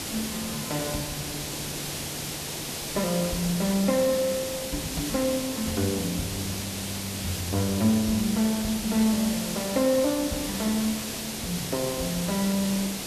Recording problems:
hiss; SNR 4 dB

